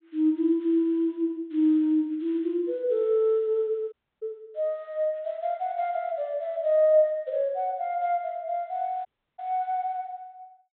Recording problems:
treble cut off; nothing above 4 kHz
audio cutting out; at 4 s and at 9 s

